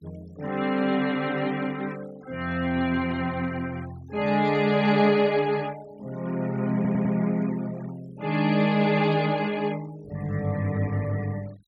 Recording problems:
denoising artefacts; signal-to-artefact ratio 23 dB
stutter; at 7 s

